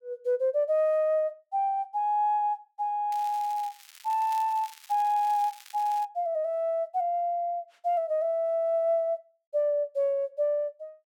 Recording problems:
crackle; from 3 to 6 s; loose cable, SNR 21 dB

